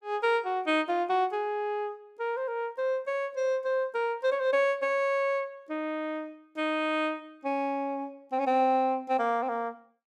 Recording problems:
none

